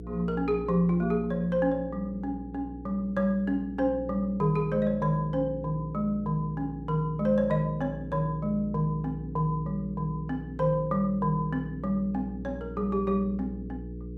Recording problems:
electrical hum; 60 Hz, harmonics up to 480 Hz, SNR 12 dB

